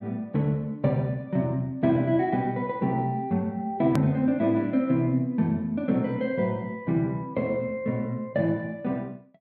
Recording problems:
click at an edit; at 4 s

